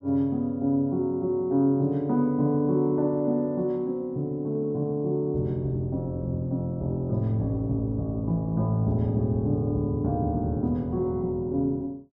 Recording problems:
none

